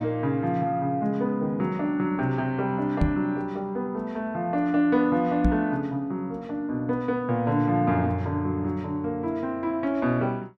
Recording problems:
knock on the microphone; at 3 s and at 5.5 s; peak +7 dB vs average level

